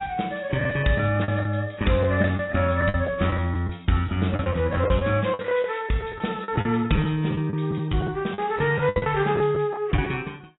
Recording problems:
lossy compression; AAC, log-spectral distance 4 dB, nothing above 3.8 kHz
lost packets; 11% of the sound replaced, filled with the last packet

